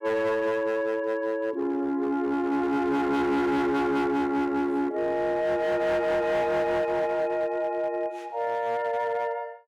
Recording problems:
distorted audio; hard clipping, signal-to-distortion ratio 12 dB

